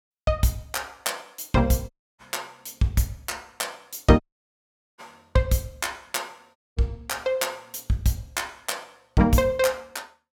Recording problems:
dropout; at 2 s, at 4 s for 1 s and at 6.5 s

